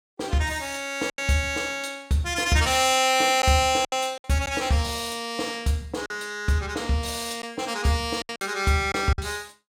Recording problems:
lost packets; 5% of the sound replaced, filled with silence

